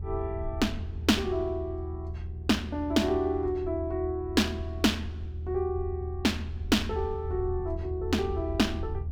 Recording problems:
hum; 60 Hz, harmonics up to 660 Hz, SNR 18 dB
rumble; below 80 Hz, strongest tone 78 Hz, SNR 7 dB

